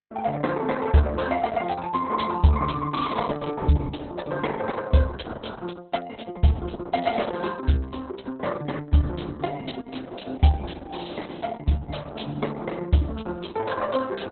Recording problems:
lossy codec; Opus, log-spectral distance 5 dB, nothing above 4 kHz

